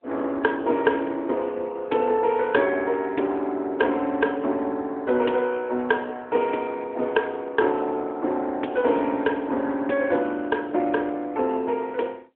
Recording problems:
phone line; 240 Hz to 3.6 kHz, AMR-NB

